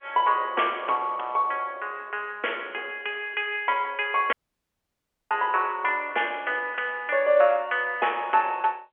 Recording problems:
phone line; 320 Hz to 3.3 kHz, G.711
dropout; at 4.5 s for 1 s

